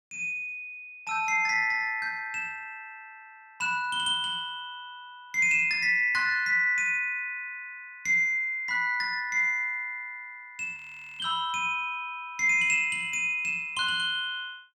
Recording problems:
audio freezing; at 11 s

